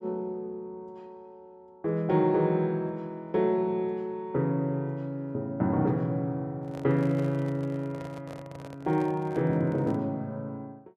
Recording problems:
handling noise; from 6.5 to 10 s; peak -11 dB vs average level

